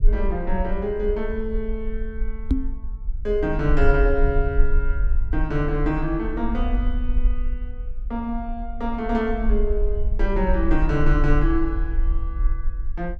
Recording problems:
rumble; below 46 Hz, strongest tone 20 Hz, SNR 2 dB
microphone bump; at 2.5 s; peak +9 dB vs average level

